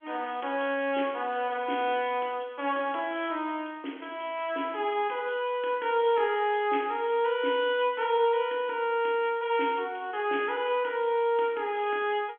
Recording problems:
telephone audio; 240 Hz to 3.4 kHz, G.711

